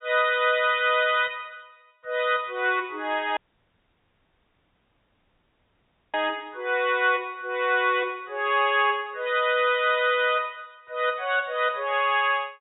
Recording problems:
treble cut off; nothing above 4 kHz
audio cutting out; at 3.5 s for 3 s

